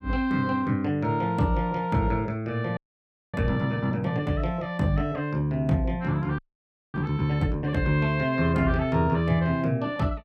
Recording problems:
audio freezing; at 3 s for 0.5 s and at 6.5 s for 0.5 s

